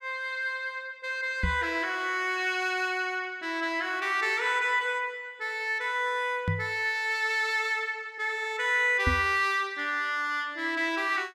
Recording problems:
knock on the microphone; at 1.5 s, at 6.5 s and at 9 s; peak +3 dB vs average level

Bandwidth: 14.5 kHz